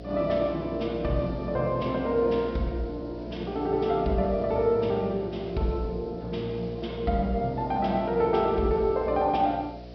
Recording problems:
treble missing; nothing above 5.5 kHz
hum; 60 Hz, harmonics up to 720 Hz, SNR 14 dB
hiss; SNR 30 dB

